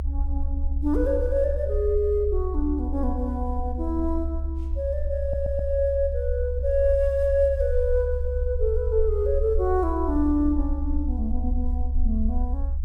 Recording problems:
low-frequency rumble; below 70 Hz, SNR 3 dB
stutter; at 5 s

